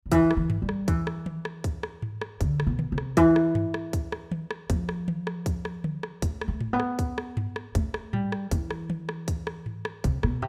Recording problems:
none

